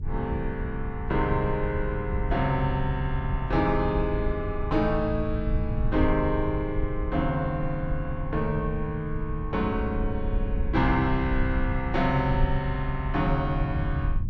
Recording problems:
hum; 60 Hz, harmonics up to 420 Hz, SNR 21 dB
low-frequency rumble; below 86 Hz, SNR 4 dB

